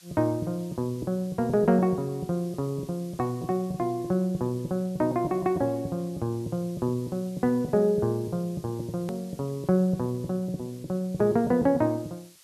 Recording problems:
background hiss; slope +3 dB per octave, SNR 25 dB
click at an edit; at 9 s

